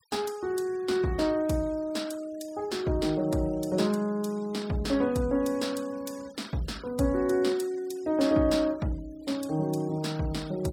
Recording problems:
noise reduction artefacts; signal-to-artefact ratio 23 dB

